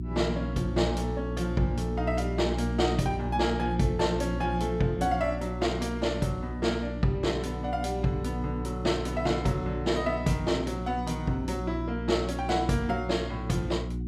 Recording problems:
hum; 60 Hz, harmonics up to 360 Hz, SNR 5 dB

